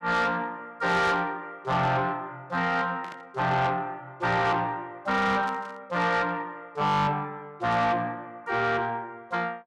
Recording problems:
distortion; soft clipping, signal-to-distortion ratio 11 dB
static burst; at 1 s, at 3 s and at 5.5 s; peak -12 dB vs average level

